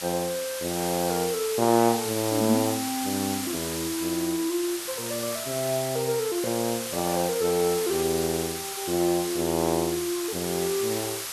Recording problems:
background hiss; slope +1 dB per octave, SNR 5 dB

